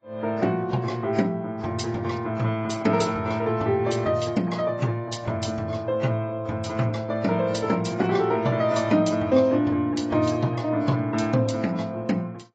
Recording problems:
lossy compression; AAC, log-spectral distance 2 dB, nothing above 7.6 kHz

